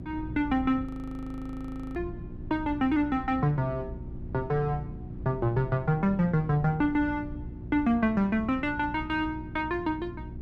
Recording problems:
electrical hum; 60 Hz, harmonics up to 360 Hz, SNR 14 dB
wind noise; below 150 Hz, SNR 15 dB
audio freezing; at 1 s for 1 s

